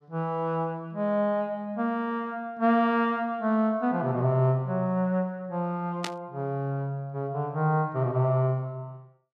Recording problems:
burst of static; at 6 s; peak -1 dB vs average level

